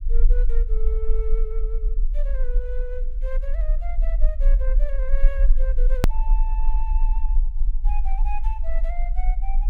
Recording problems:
rumble; below 38 Hz, strongest tone 20 Hz, SNR -13 dB
click at an edit; at 6 s

